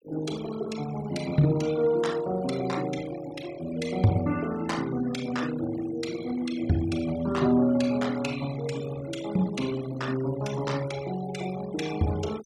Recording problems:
noise reduction artefacts; signal-to-artefact ratio 16 dB

